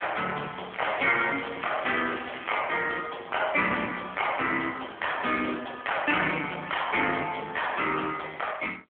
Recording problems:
phone line; 260 Hz to 3.3 kHz, AMR-NB
distorted audio; soft clipping, signal-to-distortion ratio 13 dB
crackle; from 0.5 to 2.5 s; loose cable, SNR 13 dB

